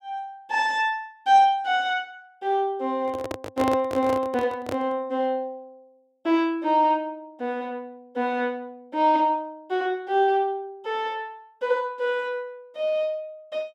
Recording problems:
microphone handling noise; from 3 to 5 s; peak -1 dB vs average level

